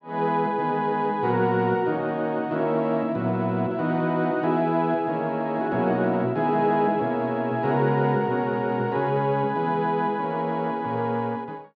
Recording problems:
none

